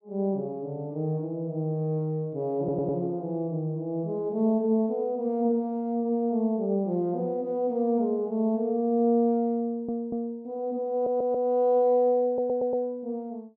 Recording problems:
stutter; 4 times, first at 2.5 s

